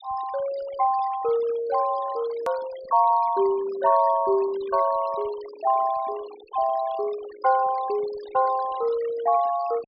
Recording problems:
treble cut off; nothing above 5.5 kHz
denoising artefacts; signal-to-artefact ratio 20 dB
edit click; at 2.5 s

